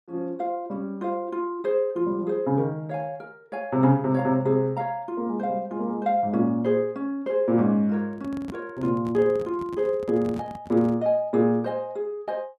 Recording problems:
handling noise; from 8 to 11 s; peak -7 dB vs average level

